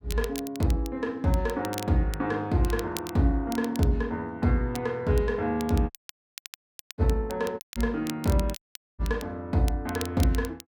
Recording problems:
crackle; vinyl, SNR 16 dB
audio cutting out; at 6 s for 1 s, at 7.5 s and at 8.5 s

